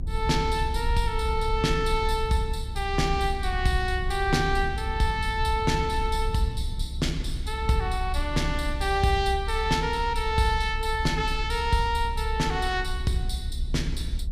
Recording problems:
rumble; below 66 Hz, strongest tone 28 Hz, SNR 5 dB

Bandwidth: 15.5 kHz